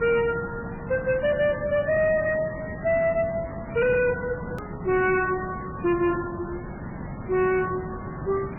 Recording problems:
codec artefacts; MP3, log-spectral distance 7 dB, nothing above 2.6 kHz
distorted audio; hard clipping, uneven, signal-to-distortion ratio 5 dB
background hiss; SNR 10 dB
click at an edit; at 4.5 s

